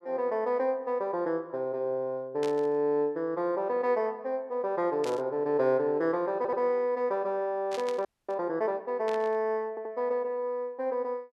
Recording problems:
static burst; 4 times, first at 2.5 s; peak -7 dB vs average level
stutter; at 6.5 s and at 9.5 s
frozen audio; at 8 s

